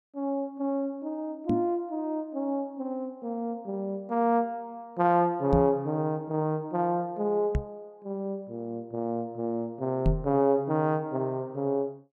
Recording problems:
knock on the microphone; 4 times, first at 1.5 s; peak +7 dB vs average level

